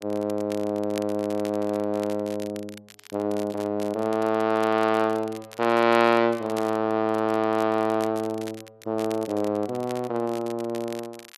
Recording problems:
crackle; vinyl, SNR 20 dB

